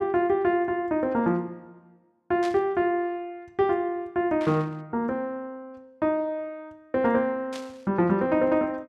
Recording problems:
burst of static; at 2.5 s, at 4.5 s and at 7.5 s; peak -10 dB vs average level

